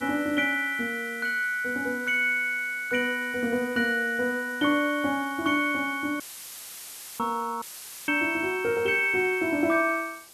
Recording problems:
background hiss; SNR 22 dB
audio cutting out; at 6 s for 1 s and at 7.5 s; filled with static

